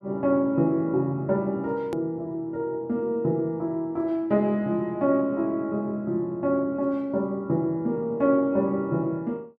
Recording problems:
click at an edit; at 2 s

